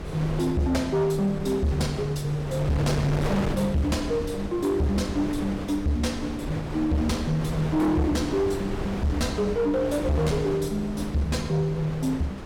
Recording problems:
distorted audio; hard clipping, signal-to-distortion ratio 10 dB
wind noise; below 570 Hz, SNR 7 dB

